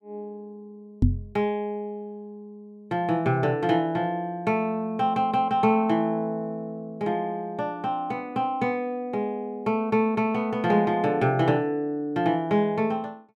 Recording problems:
knock on the microphone; at 1 s; peak +8 dB vs average level

